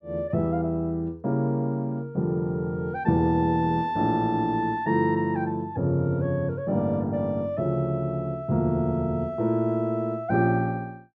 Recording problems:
none

